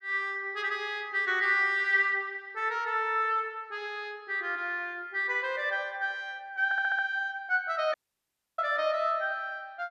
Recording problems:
audio stuttering; at 6.5 s
dropout; at 8 s for 0.5 s

